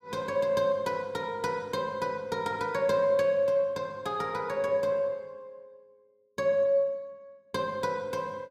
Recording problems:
none

